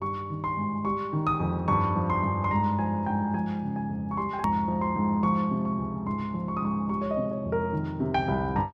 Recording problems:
edit click; at 4.5 s

